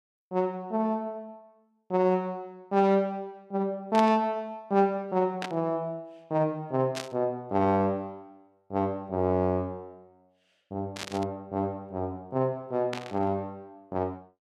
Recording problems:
static burst; 5 times, first at 4 s; peak -2 dB vs average level

